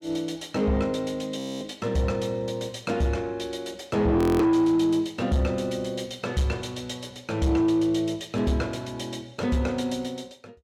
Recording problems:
distortion; soft clipping, signal-to-distortion ratio 12 dB
audio freezing; at 1.5 s and at 4 s

